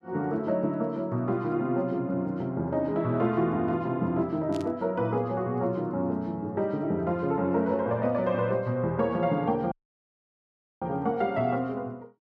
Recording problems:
static burst; at 4.5 s; peak -12 dB vs average level
audio cutting out; at 9.5 s for 1 s

